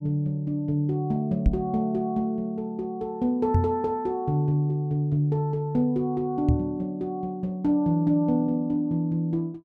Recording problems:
knock on the microphone; at 1.5 s, at 3.5 s and at 6.5 s; peak +7 dB vs average level

